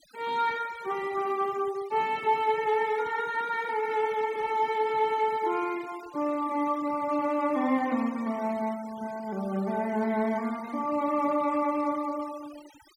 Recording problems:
denoising artefacts; signal-to-artefact ratio 20 dB

